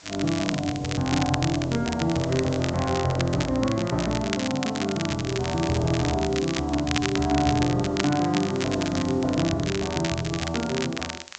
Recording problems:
treble missing; nothing above 8 kHz
background hiss; slope 0 dB per octave, SNR 24 dB
crackle; vinyl, SNR 8 dB

